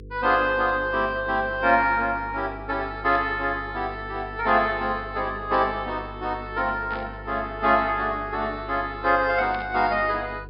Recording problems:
low-pass filter; nothing above 5.5 kHz
electrical hum; 50 Hz, harmonics up to 500 Hz, SNR 17 dB
static burst; 4 times, first at 3 s; peak -12 dB vs average level

